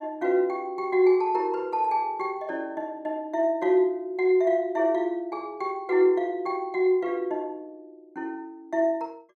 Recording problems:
none

